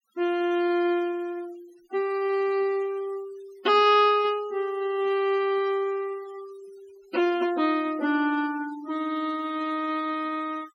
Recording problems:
denoising artefacts; signal-to-artefact ratio 22 dB

